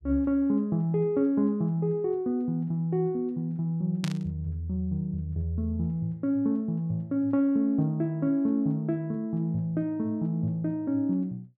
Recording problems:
burst of static; at 4 s; peak -4 dB vs average level

